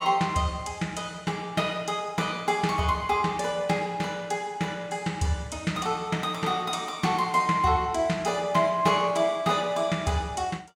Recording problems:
none

